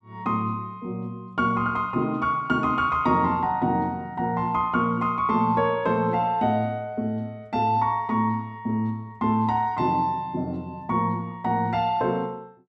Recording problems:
none

